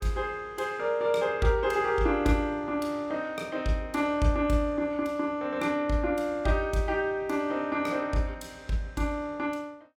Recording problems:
none

